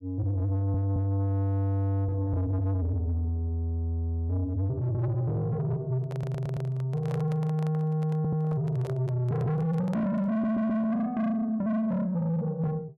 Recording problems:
distortion; soft clipping, signal-to-distortion ratio 8 dB
stutter; 4 times, first at 0.5 s
handling noise; from 6 to 11 s; peak -7 dB vs average level

